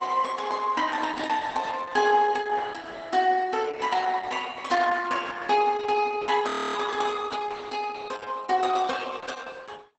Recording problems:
lossy codec; Opus, log-spectral distance 5 dB, nothing above 8 kHz
frozen audio; at 6.5 s

